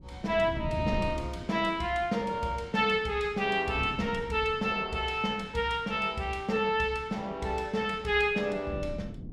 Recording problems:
wind on the microphone; below 210 Hz, SNR 13 dB

